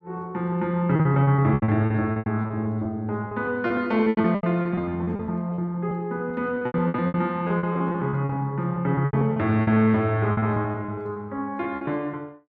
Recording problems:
packet loss; 18% of the sound replaced, filled with repeated pitch periods

